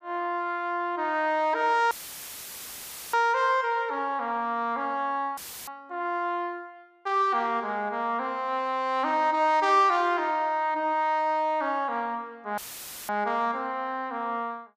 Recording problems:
audio cutting out; at 2 s for 1 s, at 5.5 s and at 13 s for 0.5 s; filled with static

